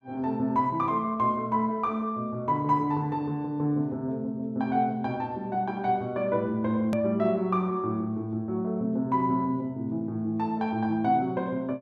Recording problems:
hard cut with a click; at 7 s

